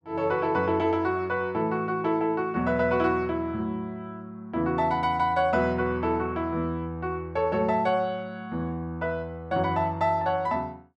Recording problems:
none

